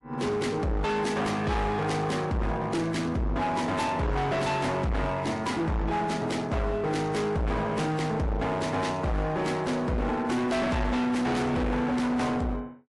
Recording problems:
lossy compression; MP3, log-spectral distance 2 dB, nothing above 11 kHz
distorted audio; hard clipping, uneven, signal-to-distortion ratio 5 dB

